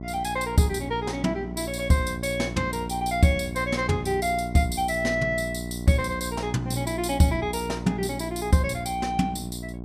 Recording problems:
hum; 60 Hz, harmonics up to 1 kHz, SNR 9 dB

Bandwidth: 14.5 kHz